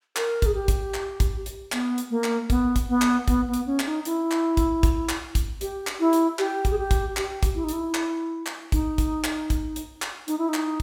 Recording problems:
none

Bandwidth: 18 kHz